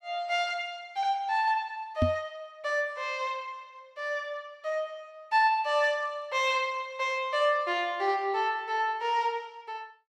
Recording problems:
microphone thump; at 2 s; peak +5 dB vs average level

